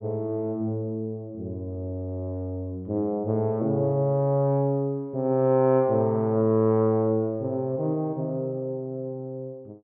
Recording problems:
treble missing; nothing above 3.3 kHz

